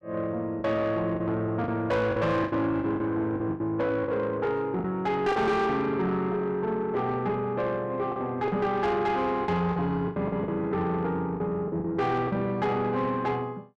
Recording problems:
distortion; soft clipping, signal-to-distortion ratio 11 dB
lost packets; 8% of the sound replaced, filled with the last packet

